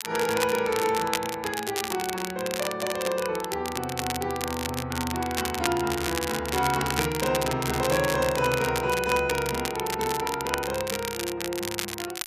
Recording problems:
crackle; vinyl, SNR 5 dB

